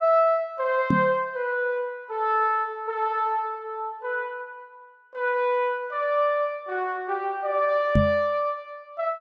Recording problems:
knock on the microphone; at 1 s and at 8 s; peak +7 dB vs average level

